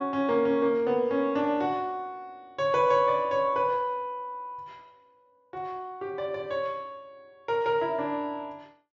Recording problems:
low-pass filter; nothing above 7.2 kHz

